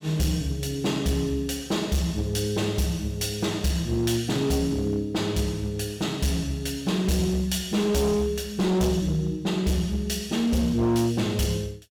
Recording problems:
distorted audio; hard clipping, signal-to-distortion ratio 11 dB

